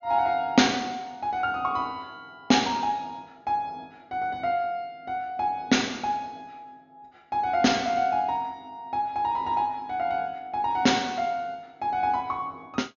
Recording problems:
treble missing; nothing above 6.8 kHz

